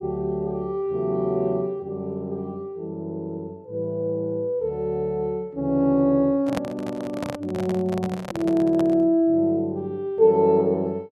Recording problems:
microphone handling noise; from 6.5 to 9 s; peak 0 dB vs average level

